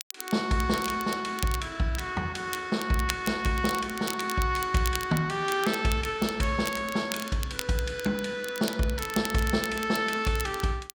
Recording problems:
crackling; vinyl, SNR 11 dB

